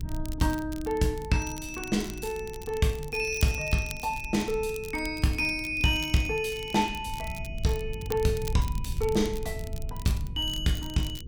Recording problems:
hum; 50 Hz, harmonics up to 500 Hz, SNR 21 dB
low-frequency rumble; below 100 Hz, SNR 11 dB
crackling; vinyl, SNR 17 dB

